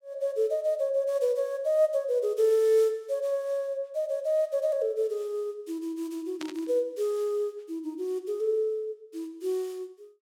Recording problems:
static burst; at 6.5 s; peak -7 dB vs average level

